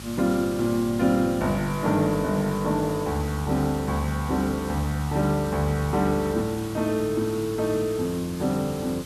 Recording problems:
hum; 50 Hz, harmonics up to 650 Hz, SNR 18 dB
background hiss; SNR 16 dB

